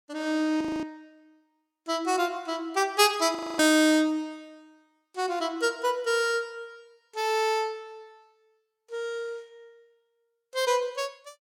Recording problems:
frozen audio; at 0.5 s and at 3.5 s

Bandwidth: 17 kHz